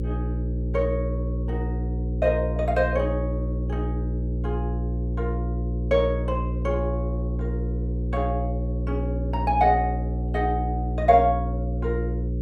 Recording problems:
electrical hum; 60 Hz, harmonics up to 540 Hz, SNR 1 dB

